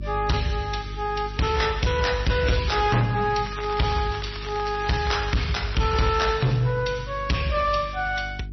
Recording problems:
lossy compression; MP3, then MP3, log-spectral distance 5 dB, nothing above 5.8 kHz
distortion; hard clipping, signal-to-distortion ratio 7 dB
electrical hum; 50 Hz, harmonics up to 400 Hz, SNR 13 dB
crackling; from 3.5 to 6.5 s; loose cable, SNR 15 dB

